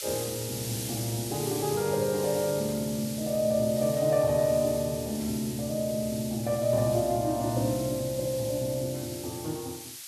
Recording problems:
background hiss; slope +5 dB per octave, SNR 9 dB

